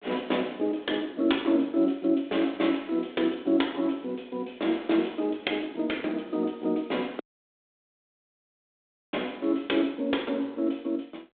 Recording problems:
phone line; 240 Hz to 3.6 kHz, G.726
audio cutting out; at 7 s for 2 s

